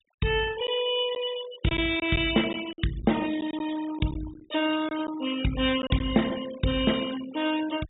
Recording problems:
low-pass filter; nothing above 4 kHz
noise reduction artefacts; signal-to-artefact ratio 13 dB
packet loss; 4% of the sound replaced, filled with silence

